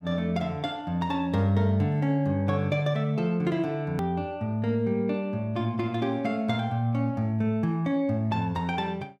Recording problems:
click at an edit; at 4 s

